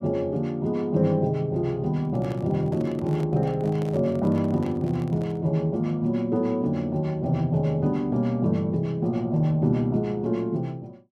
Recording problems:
handling noise; from 2 to 5.5 s; peak -9 dB vs average level

